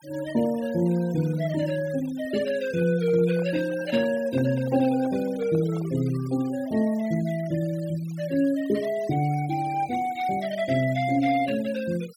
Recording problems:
denoising artefacts; signal-to-artefact ratio 19 dB
microphone handling noise; from 3 to 6 s; peak -13 dB vs average level

